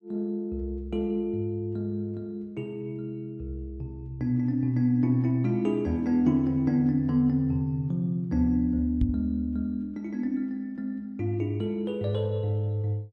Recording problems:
knock on the microphone; at 9 s; peak +3 dB vs average level

